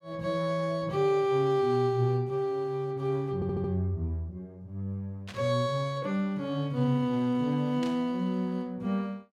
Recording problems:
audio stuttering; at 3.5 s
static burst; at 5.5 s and at 8 s; peak -9 dB vs average level

